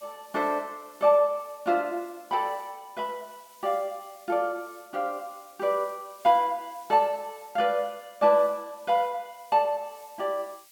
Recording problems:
background hiss; slope +4 dB per octave, SNR 26 dB

